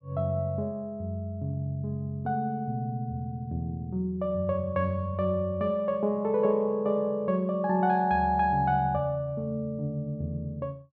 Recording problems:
none

